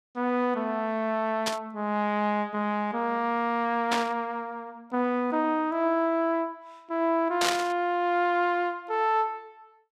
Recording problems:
static burst; at 1.5 s, at 4 s and at 7.5 s; peak +4 dB vs average level

